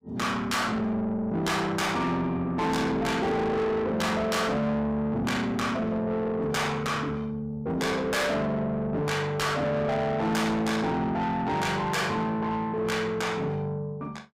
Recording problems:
distorted audio; soft clipping, signal-to-distortion ratio 7 dB

